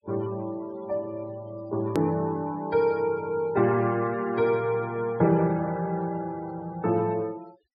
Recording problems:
treble missing; nothing above 5.5 kHz
noise reduction artefacts; signal-to-artefact ratio 24 dB
hard cut with a click; at 2 s

